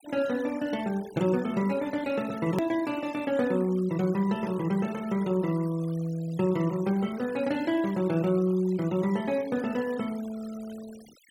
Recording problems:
denoising artefacts; signal-to-artefact ratio 20 dB
hard cut with a click; at 2.5 s

